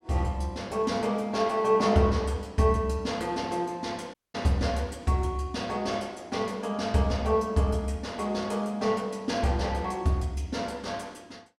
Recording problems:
dropout; at 4 s

